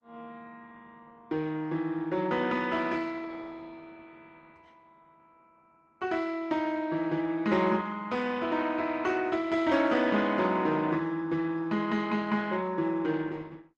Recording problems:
codec artefacts; Opus, log-spectral distance 3 dB

